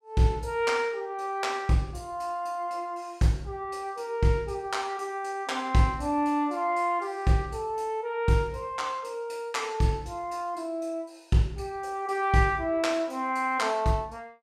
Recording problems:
none

